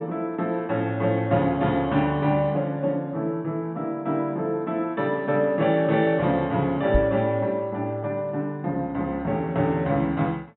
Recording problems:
treble missing; nothing above 3.9 kHz
microphone bump; at 7 s; peak +4 dB vs average level

